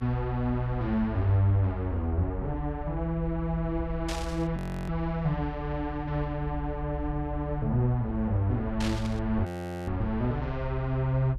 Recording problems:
electrical hum; 60 Hz, harmonics up to 360 Hz, SNR 22 dB
rumble; below 64 Hz, SNR 8 dB
static burst; at 4 s and at 9 s; peak -3 dB vs average level
audio freezing; at 4.5 s and at 9.5 s

